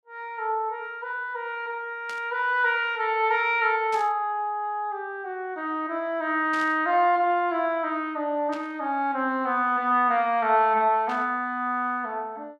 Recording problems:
static burst; 5 times, first at 2 s; peak -11 dB vs average level

